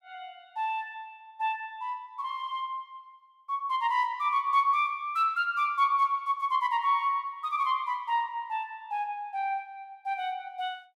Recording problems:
none

